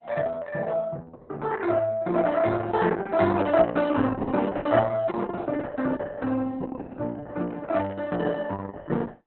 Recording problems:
lossy codec; Opus, log-spectral distance 4 dB, nothing above 4 kHz

